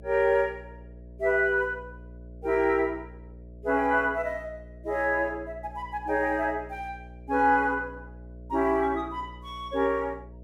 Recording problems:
electrical hum; 60 Hz, harmonics up to 660 Hz, SNR 19 dB

